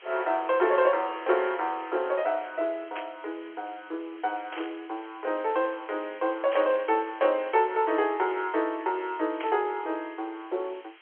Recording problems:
telephone audio; 300 Hz to 3.4 kHz, G.711
background hiss; SNR 23 dB
static burst; 4 times, first at 3 s; peak -6 dB vs average level

